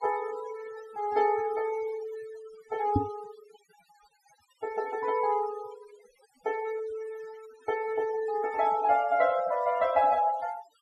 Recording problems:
denoising artefacts; signal-to-artefact ratio 18 dB
knock on the microphone; at 3 s; peak +6 dB vs average level

